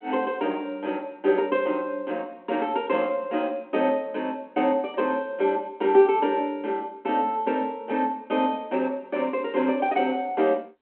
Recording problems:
telephone audio; 240 Hz to 3.3 kHz, G.726

